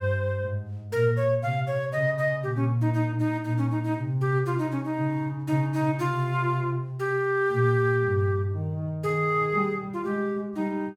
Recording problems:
none

